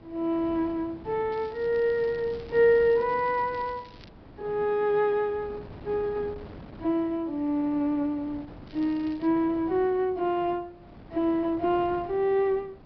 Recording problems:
low-pass filter; nothing above 5.5 kHz
wind on the microphone; below 530 Hz, SNR 20 dB
crackling; from 1.5 to 4 s and at 8.5 s; loose cable, SNR 27 dB

